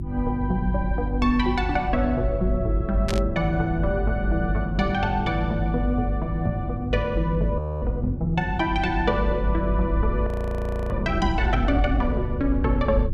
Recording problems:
hum; 50 Hz, harmonics up to 350 Hz, SNR 6 dB
rumble; below 64 Hz, strongest tone 50 Hz, SNR 4 dB
static burst; at 3 s; peak 0 dB vs average level
audio freezing; at 7.5 s and at 10 s for 0.5 s

